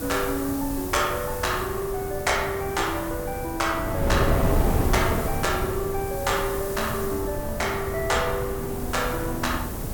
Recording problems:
hiss; SNR 10 dB
wind noise; below 400 Hz, SNR 3 dB

